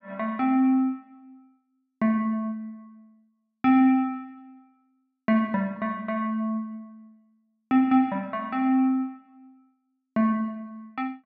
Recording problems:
none

